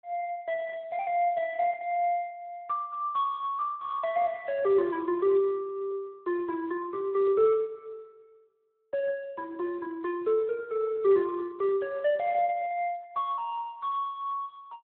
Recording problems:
telephone audio; 340 Hz to 3.5 kHz, Speex

